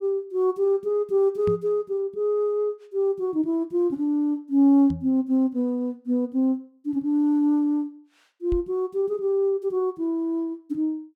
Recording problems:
microphone thump; at 1.5 s, at 5 s and at 8.5 s; peak -3 dB vs average level

